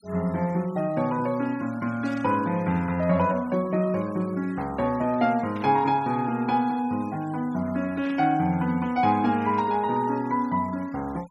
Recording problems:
denoising artefacts; signal-to-artefact ratio 24 dB
static burst; 4 times, first at 2 s; peak -15 dB vs average level

